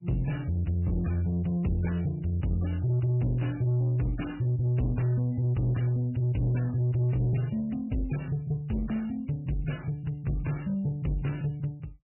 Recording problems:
codec artefacts; MP3, log-spectral distance 3 dB, nothing above 2.9 kHz
distortion; soft clipping, signal-to-distortion ratio 11 dB

